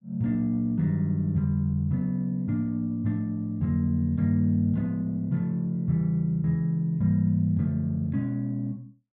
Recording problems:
none

